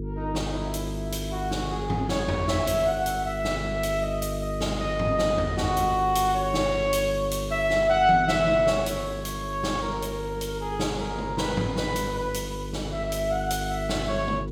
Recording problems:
hum; 50 Hz, harmonics up to 450 Hz, SNR 8 dB

